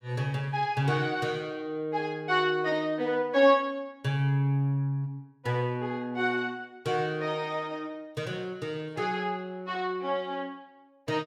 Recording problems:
none

